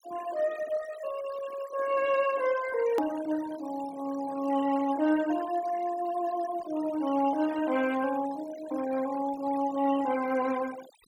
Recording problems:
noise reduction artefacts; signal-to-artefact ratio 17 dB
hard cut with a click; at 3 s

